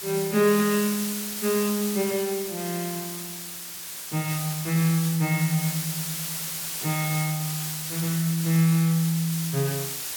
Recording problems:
background hiss; slope +2 dB per octave, SNR 5 dB

